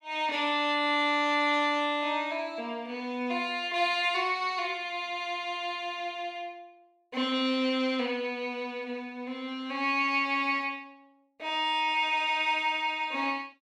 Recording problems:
none

